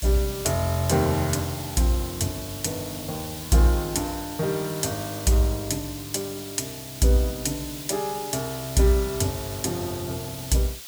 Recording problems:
background hiss; slope +3 dB per octave, SNR 10 dB

